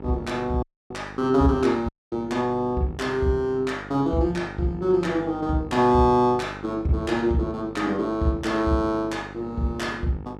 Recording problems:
hum; 50 Hz, harmonics up to 1.8 kHz, SNR 16 dB
audio cutting out; at 0.5 s and at 2 s

